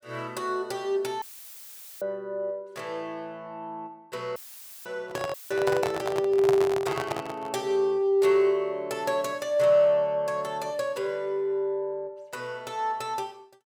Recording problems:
dropout; at 1 s for 1 s, at 4.5 s and at 5.5 s; filled with static
microphone handling noise; from 5 to 7.5 s; peak +2 dB vs average level

